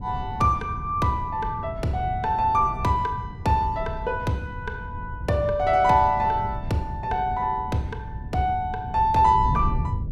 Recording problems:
wind noise; below 140 Hz, SNR 10 dB

